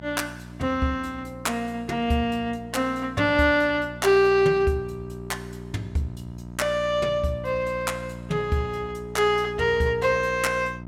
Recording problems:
electrical hum; 60 Hz, harmonics up to 1.3 kHz, SNR 15 dB

